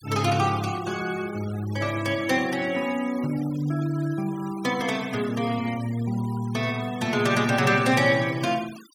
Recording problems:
noise reduction artefacts; signal-to-artefact ratio 17 dB

